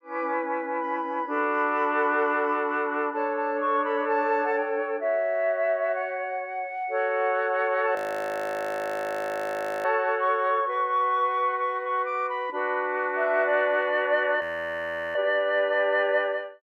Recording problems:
frozen audio; at 8 s for 2 s and at 14 s for 0.5 s

